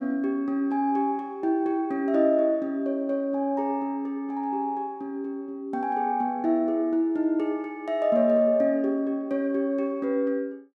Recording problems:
none

